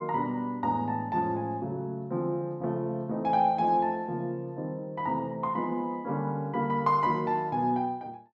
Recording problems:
none

